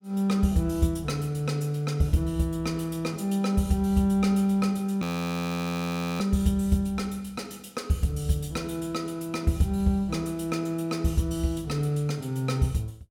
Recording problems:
audio freezing; at 5 s for 1 s

